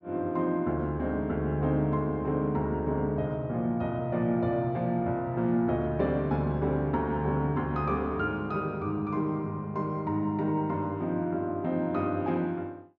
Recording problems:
treble missing; nothing above 7.4 kHz

